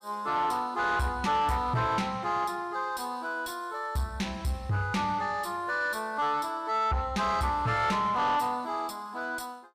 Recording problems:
distorted audio; soft clipping, signal-to-distortion ratio 11 dB

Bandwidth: 15 kHz